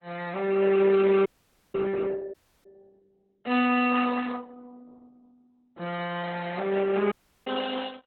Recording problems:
lossy compression; Opus, log-spectral distance 4 dB, nothing above 4 kHz
dropout; at 1.5 s, at 2.5 s and at 7 s

